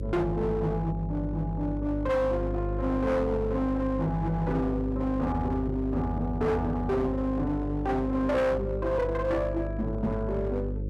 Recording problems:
distorted audio; hard clipping, uneven, signal-to-distortion ratio 10 dB
hum; 50 Hz, harmonics up to 550 Hz, SNR 6 dB

